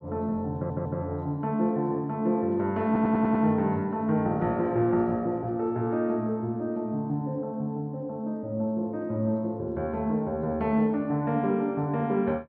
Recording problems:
audio stuttering; at 0.5 s and at 3 s

